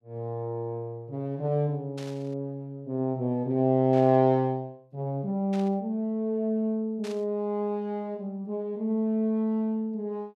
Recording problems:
burst of static; 4 times, first at 2 s; peak -12 dB vs average level

